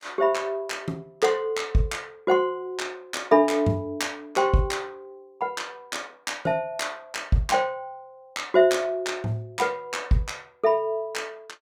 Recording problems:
none

